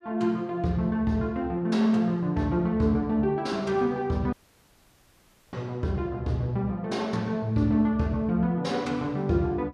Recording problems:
dropout; at 4.5 s for 1 s

